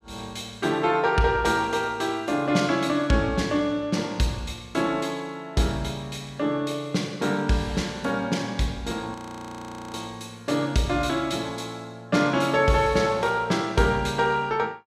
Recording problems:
frozen audio; at 9 s for 1 s

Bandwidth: 15 kHz